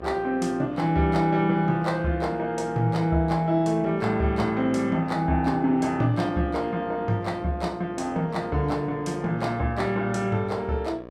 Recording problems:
hum; 60 Hz, harmonics up to 2.3 kHz, SNR 18 dB

